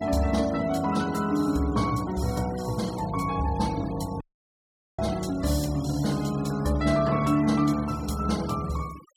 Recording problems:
noise reduction artefacts; signal-to-artefact ratio 18 dB
audio cutting out; at 4 s for 1 s

